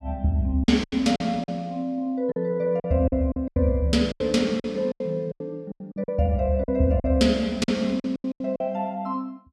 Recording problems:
packet loss; 13% of the sound replaced, filled with silence

